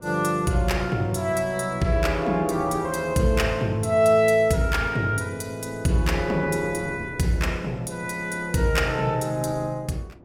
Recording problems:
wind on the microphone; below 420 Hz, SNR 20 dB

